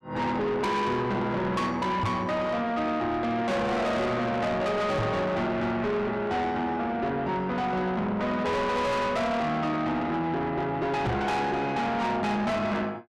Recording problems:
distorted audio; soft clipping, signal-to-distortion ratio 7 dB
knock on the microphone; at 2 s, at 5 s and at 11 s; peak +4 dB vs average level

